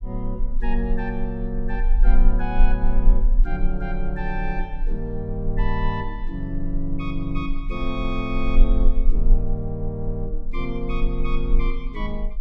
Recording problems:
rumble; below 34 Hz, strongest tone 20 Hz, SNR -2 dB

